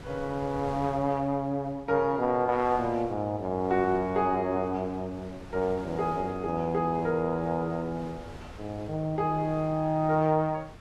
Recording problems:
wind noise; below 760 Hz, SNR 19 dB

